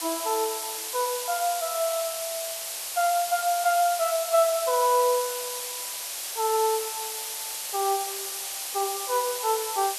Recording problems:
hiss; SNR 4 dB

